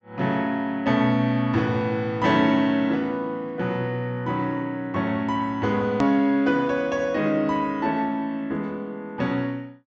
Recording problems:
treble cut off; nothing above 8 kHz
click at an edit; at 6 s

